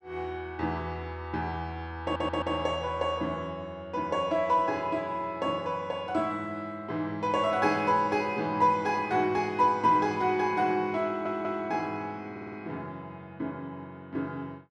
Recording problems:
audio stuttering; at 2 s, at 11 s and at 12 s

